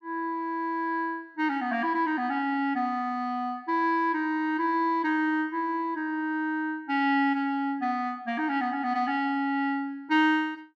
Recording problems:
none

